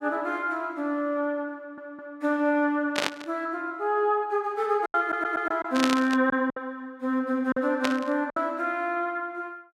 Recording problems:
lost packets; 3% of the sound replaced, filled with silence
stutter; at 1.5 s and at 5 s
burst of static; at 3 s, at 5.5 s and at 8 s; peak +5 dB vs average level

